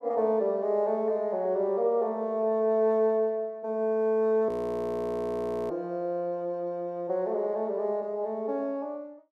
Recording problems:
frozen audio; at 4.5 s for 1 s

